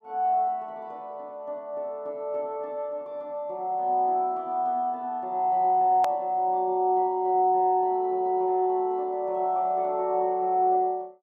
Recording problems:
edit click; at 6 s

